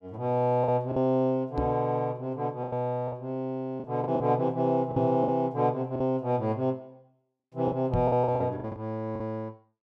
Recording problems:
packet loss; 8% of the sound replaced, filled with the last packet
microphone thump; at 1.5 s, at 5 s and at 8 s; peak +2 dB vs average level

